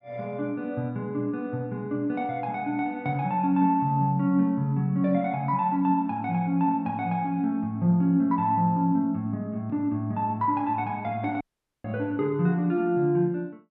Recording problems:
audio cutting out; at 11 s

